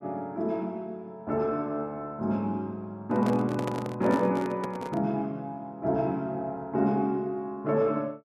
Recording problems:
handling noise; from 3 to 5 s; peak 0 dB vs average level

